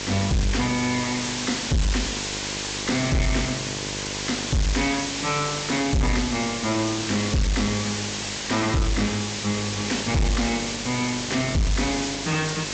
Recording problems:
treble missing; nothing above 8 kHz
distorted audio; hard clipping, uneven, signal-to-distortion ratio 10 dB
hum; 50 Hz, harmonics up to 2.1 kHz, SNR 13 dB
background hiss; slope 0 dB per octave, SNR 4 dB

